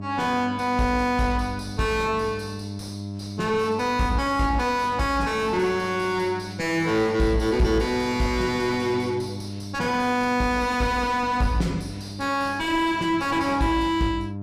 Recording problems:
distorted audio; soft clipping, signal-to-distortion ratio 3 dB
electrical hum; 50 Hz, harmonics up to 1 kHz, SNR 13 dB

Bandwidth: 15 kHz